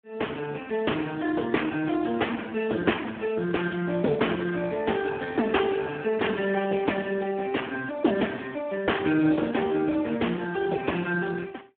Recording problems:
telephone audio; 220 Hz to 3.3 kHz, Speex

